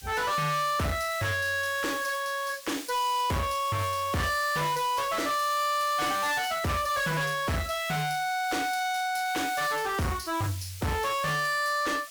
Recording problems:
distortion; soft clipping, signal-to-distortion ratio 7 dB
background hiss; SNR 14 dB

